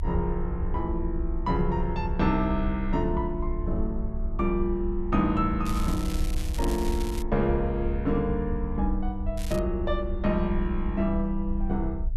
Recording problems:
rumble; below 64 Hz, strongest tone 26 Hz, SNR 4 dB
crackling; from 5.5 to 7 s and at 9.5 s; loose cable, SNR 13 dB

